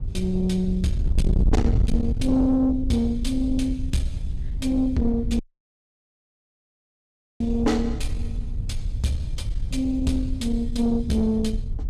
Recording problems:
distortion; soft clipping, signal-to-distortion ratio 6 dB
wind on the microphone; below 88 Hz, SNR 4 dB
dropout; at 5.5 s for 2 s

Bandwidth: 15.5 kHz